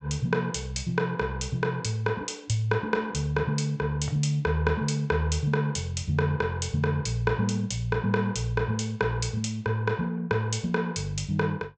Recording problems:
low-pass filter; nothing above 8 kHz

